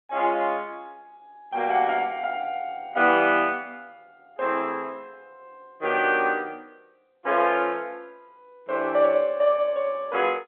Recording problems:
telephone audio; 260 Hz to 3.4 kHz, G.711

